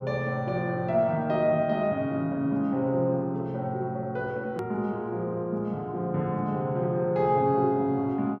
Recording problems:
hard cut with a click; at 4.5 s

